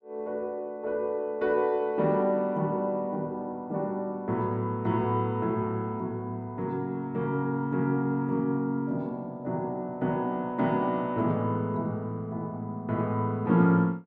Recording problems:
none

